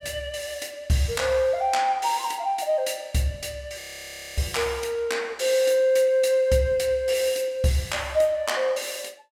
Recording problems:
audio freezing; at 4 s for 0.5 s

